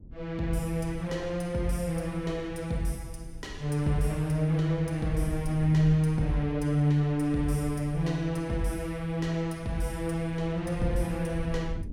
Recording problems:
rumble; below 96 Hz, SNR 15 dB

